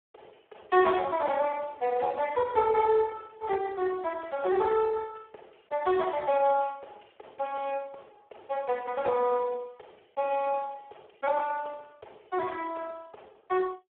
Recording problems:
telephone audio; 320 Hz to 3.3 kHz, Speex

